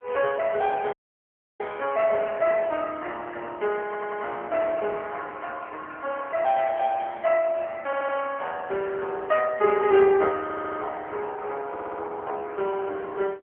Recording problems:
phone line; 340 Hz to 3.1 kHz, AMR-NB
dropout; at 1 s for 0.5 s
stutter; 4 times, first at 4 s

